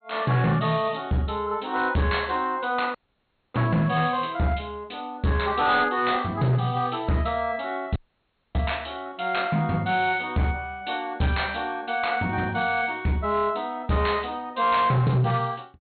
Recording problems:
treble cut off; nothing above 4.3 kHz
distorted audio; hard clipping, uneven, signal-to-distortion ratio 12 dB
audio cutting out; at 3 s for 0.5 s and at 8 s for 0.5 s

